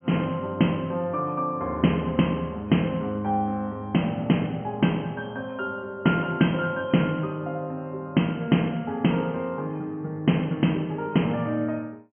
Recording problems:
treble cut off; nothing above 3.2 kHz

